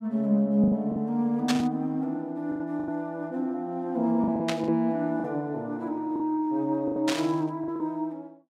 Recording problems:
packet loss; 8% of the sound replaced, filled with the last packet
static burst; at 1.5 s, at 4.5 s and at 7 s; peak +3 dB vs average level

